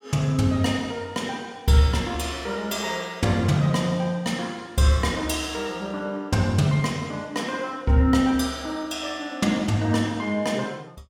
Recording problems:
none

